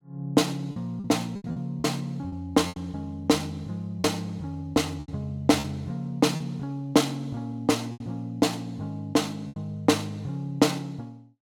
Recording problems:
packet loss; 6% of the sound replaced, filled with repeated pitch periods

